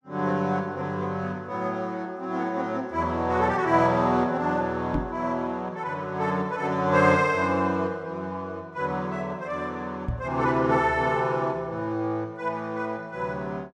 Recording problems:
knock on the microphone; at 5 s and at 10 s; peak +2 dB vs average level

